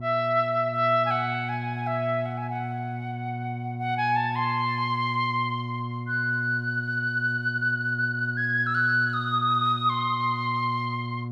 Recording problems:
electrical hum; 60 Hz, harmonics up to 720 Hz, SNR 8 dB

